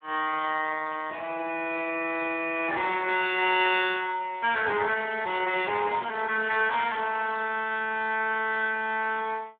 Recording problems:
telephone audio; 260 Hz to 3.5 kHz, Speex

